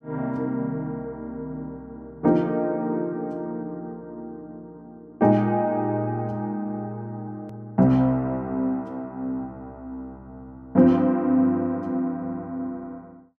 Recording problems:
edit click; at 7.5 s

